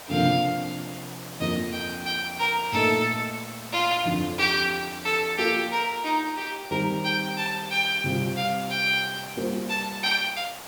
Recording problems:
background hiss; SNR 14 dB

